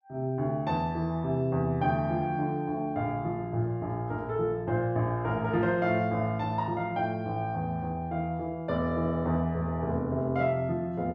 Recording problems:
none

